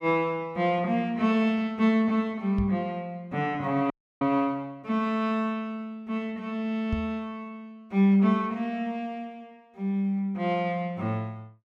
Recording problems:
knock on the microphone; at 2.5 s and at 7 s; peak 0 dB vs average level
audio freezing; at 4 s

